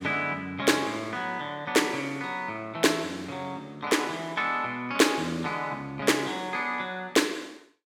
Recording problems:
none

